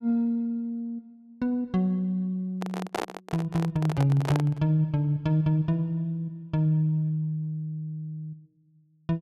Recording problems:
handling noise; from 2.5 to 4.5 s; peak +1 dB vs average level

